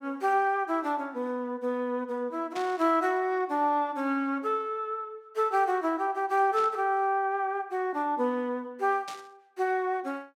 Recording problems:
static burst; at 2.5 s, at 6.5 s and at 9 s; peak -8 dB vs average level

